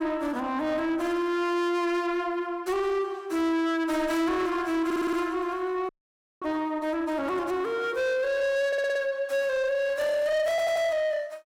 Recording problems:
distorted audio; soft clipping, signal-to-distortion ratio 11 dB
stutter; at 5 s, at 8.5 s and at 11 s
frozen audio; at 6 s for 0.5 s

